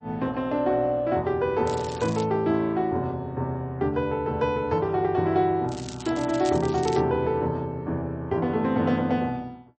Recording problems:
lossy compression; MP3, log-spectral distance 2 dB
crackle; at 1.5 s and from 5.5 to 7 s; loose cable, SNR 17 dB

